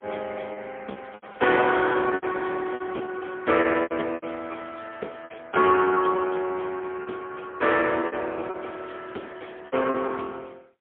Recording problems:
telephone audio; 240 Hz to 3.3 kHz, AMR-NB, then MP3
packet loss; 13% of the sound replaced, filled with repeated pitch periods
crackling; from 1 to 2 s, at 4.5 s and from 8.5 to 10 s; loose cable, SNR 29 dB

